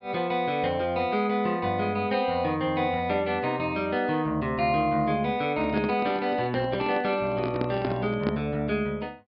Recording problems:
low-pass filter; nothing above 5.5 kHz
microphone handling noise; from 5.5 to 8.5 s; peak 0 dB vs average level

